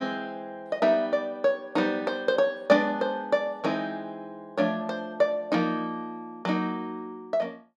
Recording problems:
none

